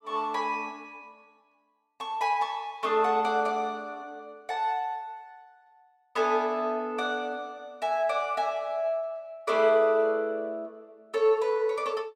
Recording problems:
none

